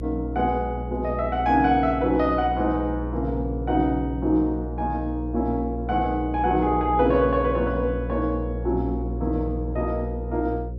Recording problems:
hum; 60 Hz, harmonics up to 540 Hz, SNR 7 dB

